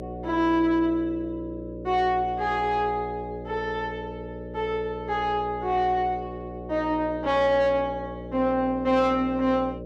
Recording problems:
distortion; soft clipping, signal-to-distortion ratio 12 dB
hum; 60 Hz, harmonics up to 600 Hz, SNR 12 dB

